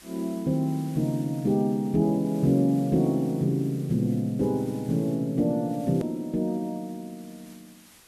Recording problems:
hiss; slope -1 dB per octave, SNR 25 dB
edit click; at 6 s

